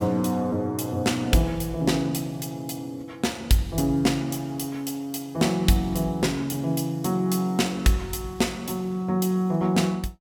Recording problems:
none

